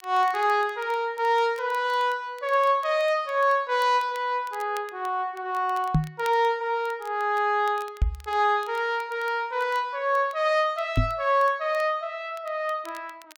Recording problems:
crackling; vinyl, SNR 27 dB
knock on the microphone; at 6 s, at 8 s and at 11 s; peak +6 dB vs average level

